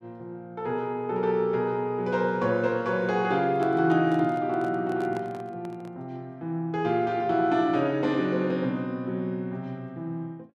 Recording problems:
microphone handling noise; from 3.5 to 6 s; peak -10 dB vs average level

